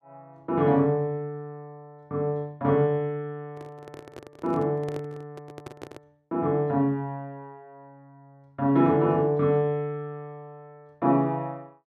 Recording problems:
microphone handling noise; from 3.5 to 6 s; peak -9 dB vs average level

